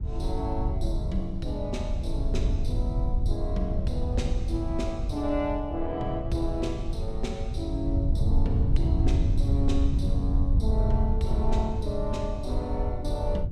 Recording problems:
wind noise; below 90 Hz, SNR -4 dB

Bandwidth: 15.5 kHz